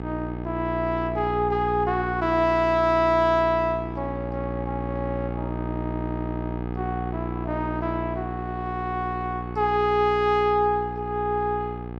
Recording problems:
electrical hum; 60 Hz, harmonics up to 1.7 kHz, SNR 7 dB

